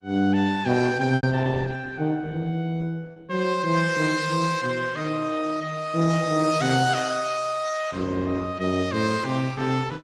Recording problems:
lossy codec; Opus, log-spectral distance 5 dB
packet loss; 1.4% of the sound replaced, filled with repeated pitch periods

